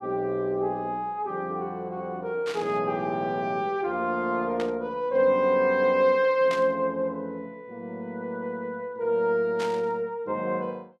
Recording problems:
burst of static; 4 times, first at 2.5 s; peak -7 dB vs average level

